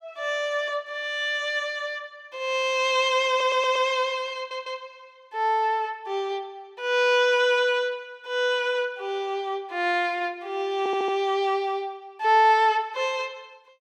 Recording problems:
stutter; at 3.5 s, at 4.5 s and at 11 s

